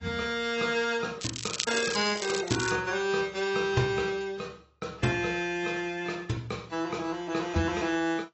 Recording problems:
lossy codec; AAC, log-spectral distance 6 dB, nothing above 7.6 kHz
crackle; from 1 to 2.5 s; loose cable, SNR 5 dB

